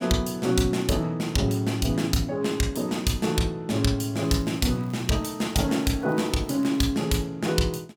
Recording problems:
crackling; from 4 to 7 s; loose cable, SNR 28 dB

